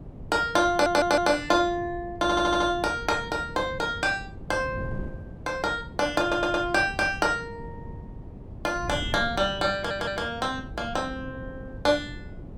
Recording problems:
wind on the microphone; below 220 Hz, SNR 14 dB
audio stuttering; 4 times, first at 0.5 s

